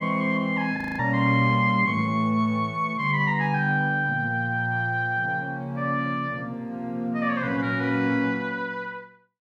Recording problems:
audio freezing; at 1 s

